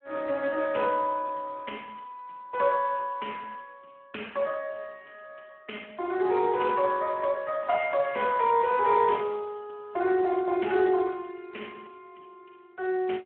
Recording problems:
telephone audio; 260 Hz to 3.2 kHz, Speex

